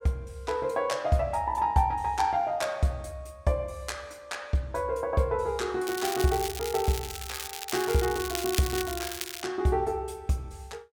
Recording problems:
crackle; from 6 to 9.5 s; loose cable, SNR 6 dB

